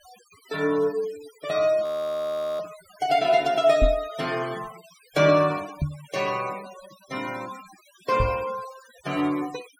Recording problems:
denoising artefacts; signal-to-artefact ratio 18 dB
frozen audio; at 2 s for 0.5 s
microphone thump; at 4 s, at 6 s and at 8 s; peak +4 dB vs average level

